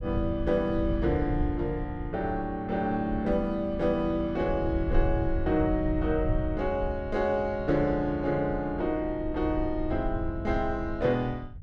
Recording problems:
rumble; below 88 Hz, SNR 7 dB

